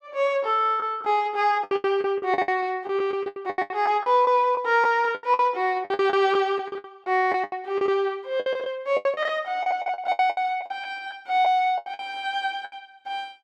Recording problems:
lost packets; 17% of the sound replaced, filled with the last packet

